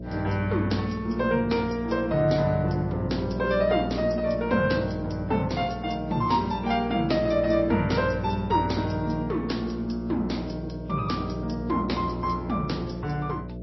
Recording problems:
lossy codec; MP2, then MP3, log-spectral distance 3 dB, nothing above 5.7 kHz
hum; 60 Hz, harmonics up to 660 Hz, SNR 9 dB

